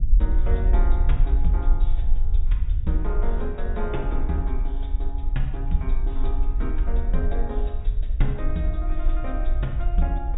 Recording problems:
treble cut off; nothing above 4 kHz
rumble; below 48 Hz, strongest tone 22 Hz, SNR -6 dB

